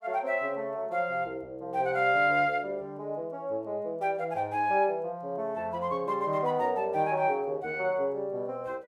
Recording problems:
none

